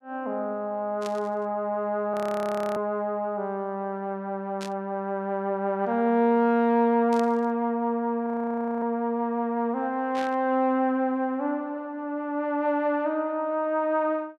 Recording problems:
burst of static; 4 times, first at 1 s; peak -9 dB vs average level
audio freezing; at 2 s for 0.5 s and at 8.5 s for 0.5 s

